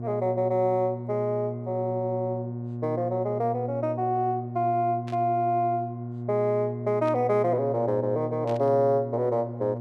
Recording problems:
hum; 60 Hz, harmonics up to 720 Hz, SNR 8 dB
static burst; at 5 s, at 7 s and at 8.5 s; peak -14 dB vs average level

